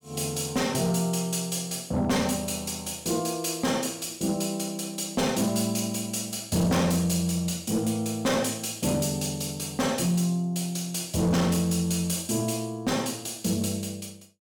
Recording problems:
distortion; hard clipping, uneven, signal-to-distortion ratio 12 dB

